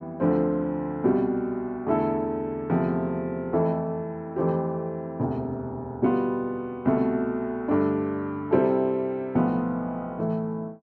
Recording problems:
none

